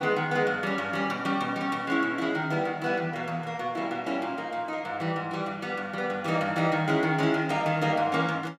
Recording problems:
none

